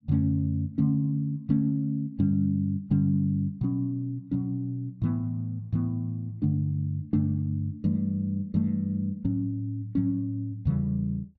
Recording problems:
none

